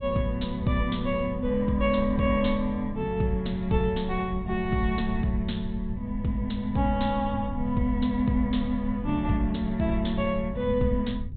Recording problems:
low-pass filter; nothing above 4 kHz
rumble; below 92 Hz, SNR 10 dB

